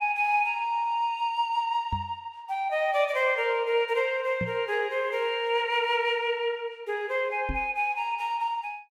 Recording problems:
microphone thump; at 2 s, at 4.5 s and at 7.5 s; peak -2 dB vs average level

